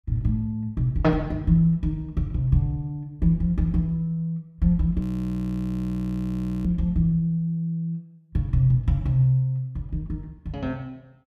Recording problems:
frozen audio; at 5 s for 1.5 s

